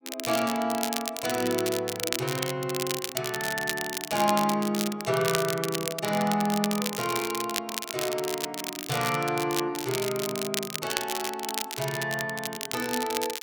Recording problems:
crackling; vinyl, SNR 4 dB

